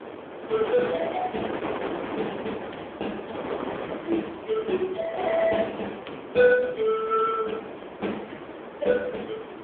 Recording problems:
phone line; 260 Hz to 3.4 kHz, AMR-NB
wind on the microphone; below 970 Hz, SNR 8 dB

